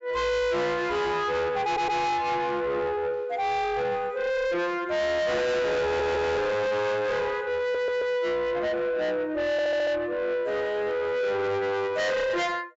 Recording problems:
treble missing; nothing above 8 kHz
distortion; soft clipping, signal-to-distortion ratio 7 dB
audio stuttering; 4 times, first at 1.5 s

